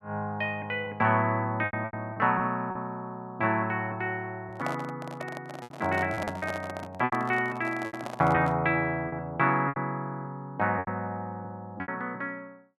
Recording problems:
lost packets; 7% of the sound replaced, filled with repeated pitch periods
microphone handling noise; from 4.5 to 8.5 s; peak -1 dB vs average level

